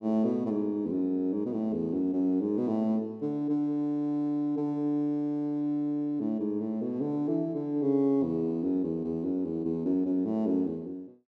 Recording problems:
none

